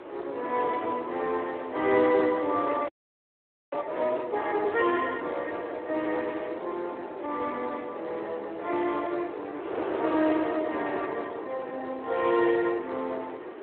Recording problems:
telephone audio; 280 Hz to 2.8 kHz, Speex
wind on the microphone; below 750 Hz, SNR 10 dB
audio freezing; at 3 s for 1 s

